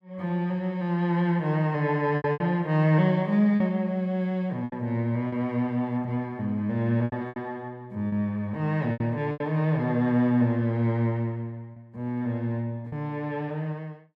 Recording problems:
packet loss; 5% of the sound replaced, filled with repeated pitch periods

